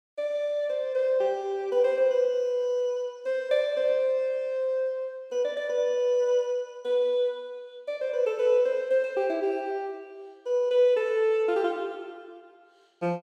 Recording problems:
none

